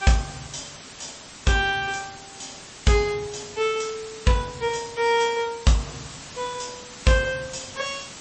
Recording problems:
codec artefacts; MP3, log-spectral distance 18 dB, nothing above 8 kHz
background hiss; slope -1 dB per octave, SNR 15 dB

